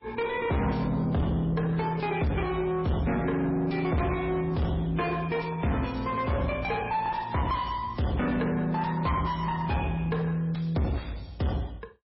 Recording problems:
lossy codec; MP3, log-spectral distance 4 dB, nothing above 5.5 kHz
distorted audio; soft clipping, signal-to-distortion ratio 6 dB

